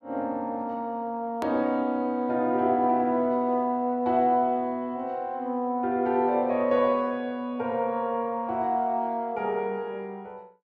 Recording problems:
hard cut with a click; at 1.5 s

